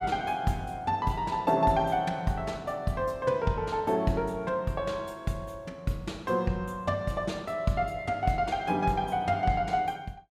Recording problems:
none

